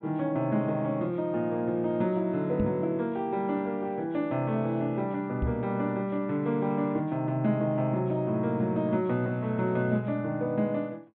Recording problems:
low-pass filter; nothing above 4 kHz
knock on the microphone; at 2.5 s and at 5.5 s; peak +4 dB vs average level

